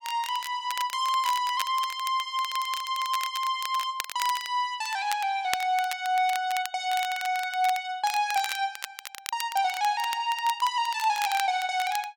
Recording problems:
crackle; vinyl, SNR 11 dB

